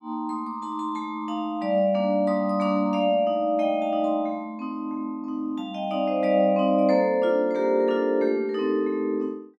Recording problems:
none

